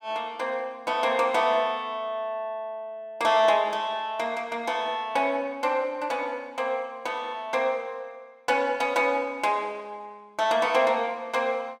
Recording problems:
none

